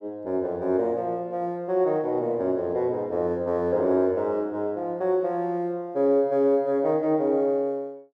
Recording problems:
none

